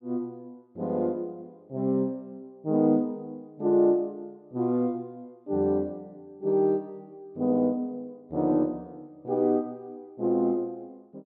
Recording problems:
none

